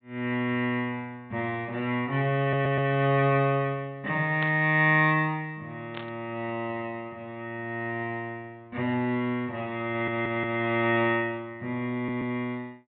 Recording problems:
treble cut off; nothing above 4 kHz
stutter; at 2.5 s, at 10 s and at 12 s
burst of static; at 4.5 s and at 6 s; peak -5 dB vs average level

